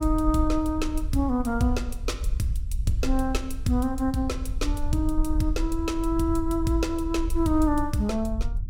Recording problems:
rumble; below 60 Hz, SNR 5 dB

